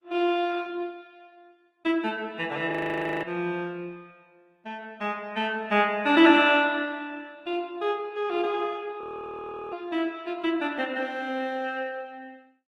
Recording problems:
lossy codec; Opus, log-spectral distance 2 dB, nothing above 16.1 kHz
frozen audio; at 2.5 s for 0.5 s and at 9 s for 0.5 s

